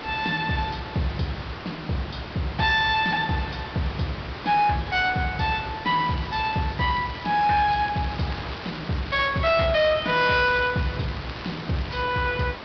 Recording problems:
low-pass filter; nothing above 5.5 kHz
distorted audio; hard clipping, signal-to-distortion ratio 11 dB
hiss; SNR 12 dB
crackling; from 6 to 12 s; loose cable, SNR 19 dB

